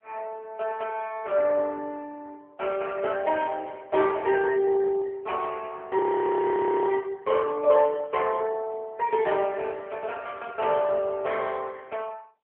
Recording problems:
phone line; 300 Hz to 3.5 kHz, AMR-NB
frozen audio; at 6 s for 1 s

